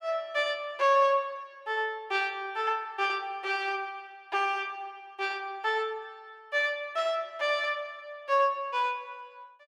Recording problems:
none

